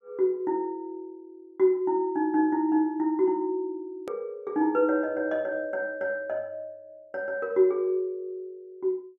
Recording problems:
edit click; at 4 s

